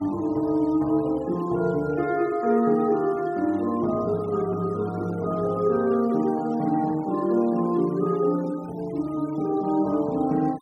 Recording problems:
noise reduction artefacts; signal-to-artefact ratio 23 dB

